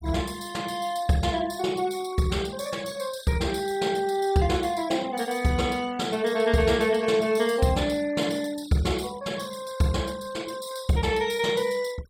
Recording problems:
denoising artefacts; signal-to-artefact ratio 20 dB

